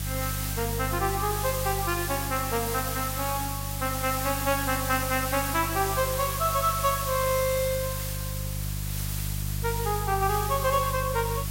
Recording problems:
hum; 50 Hz, harmonics up to 350 Hz, SNR 6 dB
hiss; slope +1 dB per octave, SNR 4 dB

